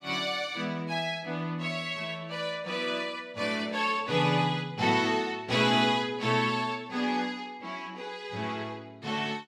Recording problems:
none

